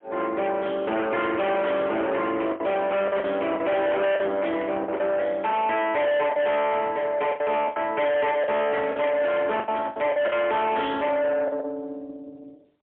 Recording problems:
phone line; 240 Hz to 3.3 kHz, AMR-NB, then MP3
distortion; soft clipping, signal-to-distortion ratio 6 dB
packet loss; 7% of the sound replaced, filled with the last packet
burst of static; at 4.5 s, at 7.5 s and at 9 s; peak -12 dB vs average level

